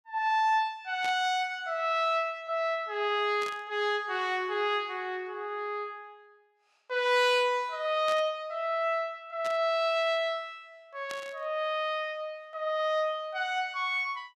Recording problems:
burst of static; 5 times, first at 1 s; peak -7 dB vs average level

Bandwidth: 14.5 kHz